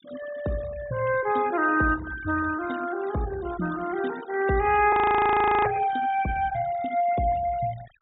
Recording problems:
treble cut off; nothing above 4 kHz
denoising artefacts; signal-to-artefact ratio 18 dB
frozen audio; at 5 s for 0.5 s

